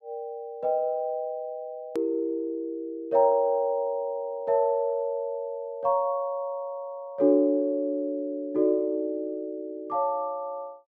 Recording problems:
edit click; at 2 s

